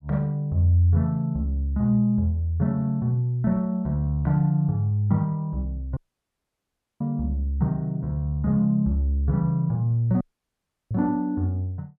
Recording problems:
audio cutting out; at 6 s for 1 s and at 10 s for 0.5 s

